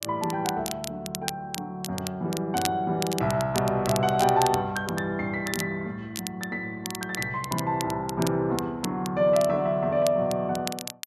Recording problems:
crackling; vinyl, SNR 10 dB

